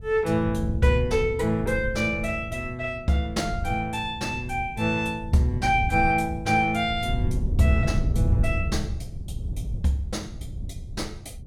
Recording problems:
wind on the microphone; below 120 Hz, SNR 6 dB

